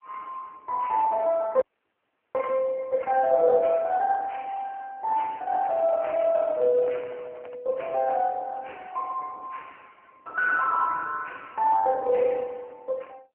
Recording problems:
telephone audio; 220 Hz to 3 kHz, AMR-NB
audio freezing; at 1.5 s for 0.5 s
handling noise; from 5.5 to 7.5 s; peak -10 dB vs average level

